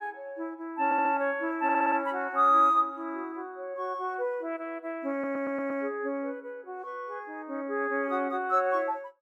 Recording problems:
audio stuttering; at 1 s, at 1.5 s and at 5 s

